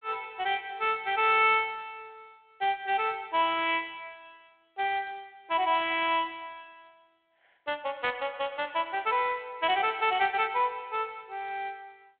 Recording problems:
phone line; 340 Hz to 3.5 kHz, G.726

